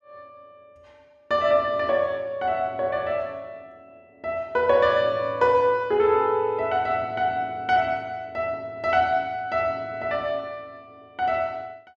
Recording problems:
none

